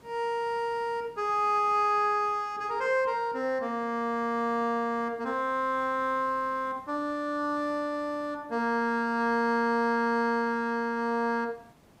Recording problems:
hiss; slope -6 dB per octave, SNR 29 dB

